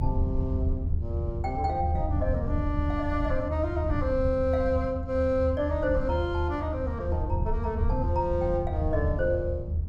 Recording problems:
hum; 50 Hz, harmonics up to 450 Hz, SNR 13 dB
low-frequency rumble; below 84 Hz, SNR 2 dB

